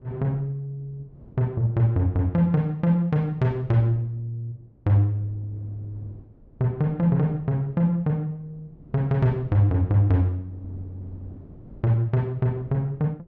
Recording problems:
wind on the microphone; below 260 Hz, SNR 24 dB

